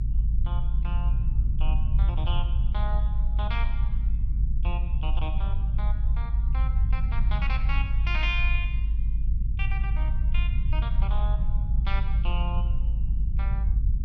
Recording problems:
low-frequency rumble; below 54 Hz, strongest tone 52 Hz, SNR -10 dB

